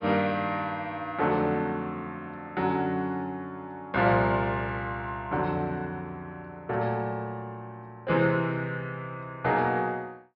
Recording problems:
treble missing; nothing above 5.5 kHz

